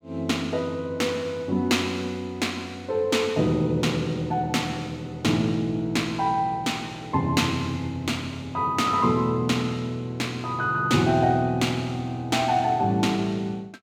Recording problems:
none

